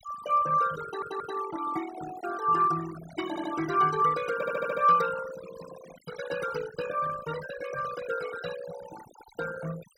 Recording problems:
noise reduction artefacts; signal-to-artefact ratio 12 dB
audio stuttering; at 1 s, at 3.5 s and at 4.5 s

